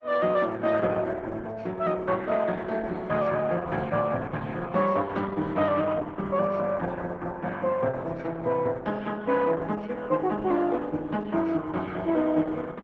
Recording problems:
codec artefacts; Opus, log-spectral distance 3 dB

